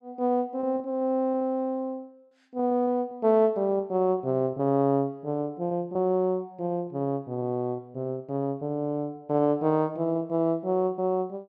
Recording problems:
packet loss; 5% of the sound replaced, filled with repeated pitch periods

